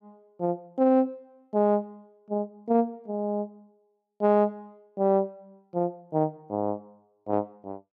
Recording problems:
none

